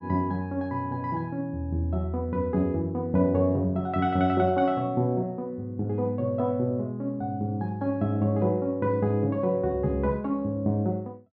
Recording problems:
none

